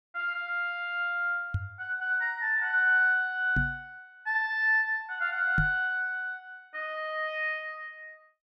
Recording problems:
microphone bump; at 1.5 s, at 3.5 s and at 5.5 s; peak +3 dB vs average level

